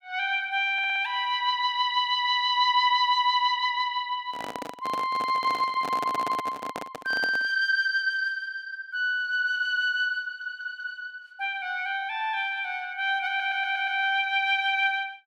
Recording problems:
audio stuttering; 4 times, first at 0.5 s
microphone handling noise; from 4 to 7.5 s; peak -4 dB vs average level

